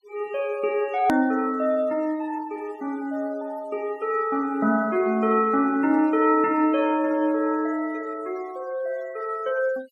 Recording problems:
denoising artefacts; signal-to-artefact ratio 25 dB
click at an edit; at 1 s

